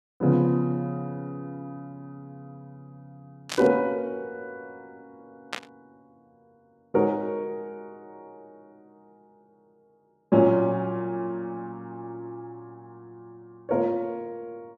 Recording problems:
static burst; at 3.5 s and at 5.5 s; peak 0 dB vs average level

